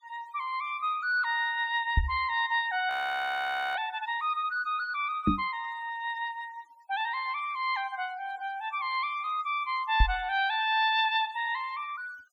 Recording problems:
noise reduction artefacts; signal-to-artefact ratio 24 dB
microphone bump; at 2 s, at 5.5 s and at 10 s; peak +8 dB vs average level
audio freezing; at 3 s for 1 s

